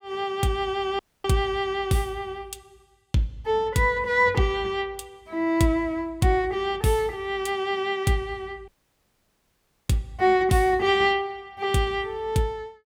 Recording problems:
audio cutting out; at 1 s and at 8.5 s for 1 s

